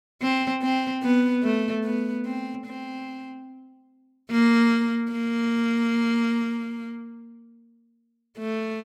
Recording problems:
none

